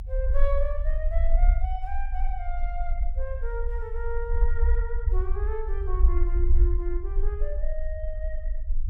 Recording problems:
low-frequency rumble; below 50 Hz, strongest tone 20 Hz, SNR -8 dB

